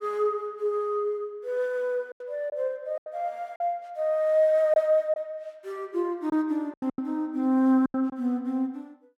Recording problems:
packet loss; 6% of the sound replaced, filled with silence

